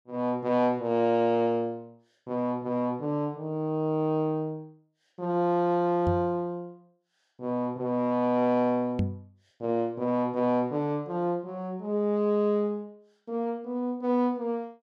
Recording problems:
microphone thump; at 6 s and at 9 s; peak +4 dB vs average level

